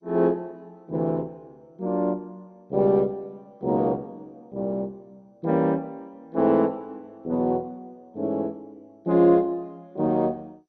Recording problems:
codec artefacts; MP2, log-spectral distance 2 dB

